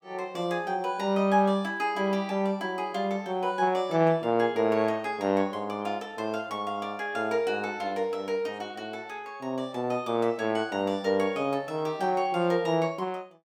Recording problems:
none

